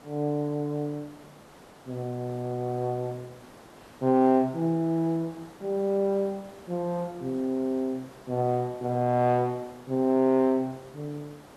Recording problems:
background hiss; slope -6 dB per octave, SNR 22 dB

